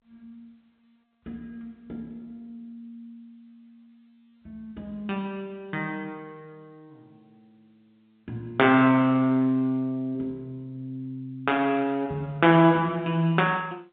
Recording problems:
telephone audio; 170 Hz to 3.7 kHz, G.711

